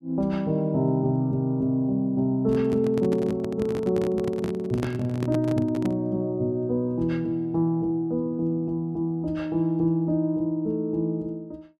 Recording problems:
microphone handling noise; from 2.5 to 6 s; peak -1 dB vs average level

